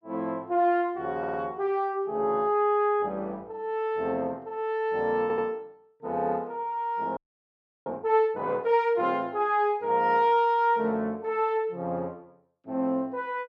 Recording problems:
stutter; at 1 s and at 5 s
frozen audio; at 7 s for 0.5 s

